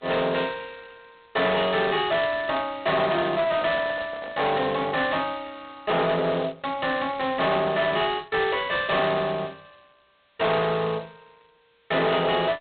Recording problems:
telephone audio; 220 Hz to 3.7 kHz, G.726
distortion; soft clipping, signal-to-distortion ratio 7 dB
microphone handling noise; from 3.5 to 5 s; peak -8 dB vs average level

